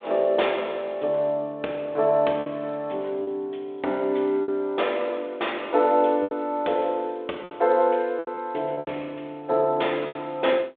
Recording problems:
telephone audio; 260 Hz to 3.6 kHz, G.726
packet loss; 6% of the sound replaced, filled with repeated pitch periods

